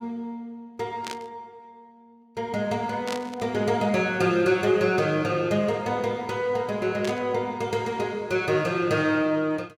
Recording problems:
static burst; at 1 s, at 3 s and at 7 s; peak -5 dB vs average level

